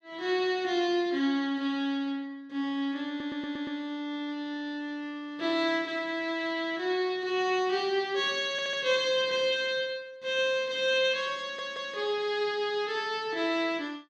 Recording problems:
stutter; at 3 s, at 8.5 s and at 11 s

